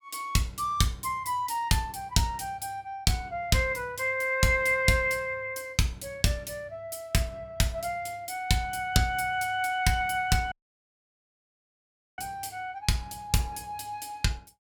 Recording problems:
audio cutting out; at 11 s for 1.5 s

